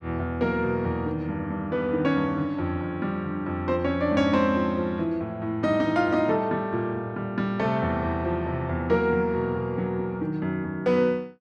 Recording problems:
none

